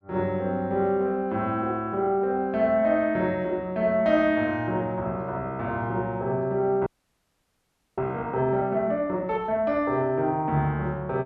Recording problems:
frozen audio; at 7 s for 1 s

